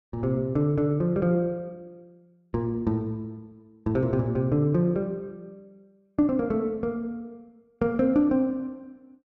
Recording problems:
none

